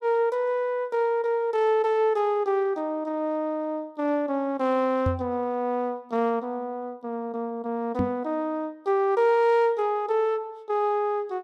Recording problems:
knock on the microphone; at 5 s and at 8 s; peak +3 dB vs average level

